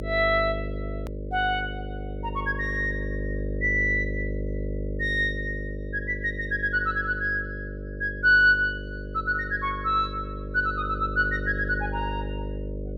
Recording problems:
mains hum; 50 Hz, harmonics up to 600 Hz, SNR 8 dB
hard cut with a click; at 1 s

